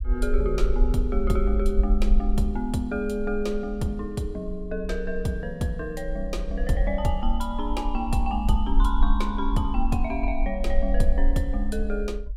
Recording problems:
rumble; below 46 Hz, SNR 0 dB

